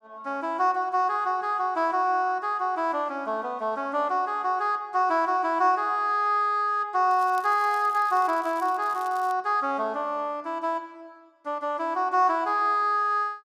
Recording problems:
crackle; from 7 to 9.5 s; loose cable, SNR 26 dB

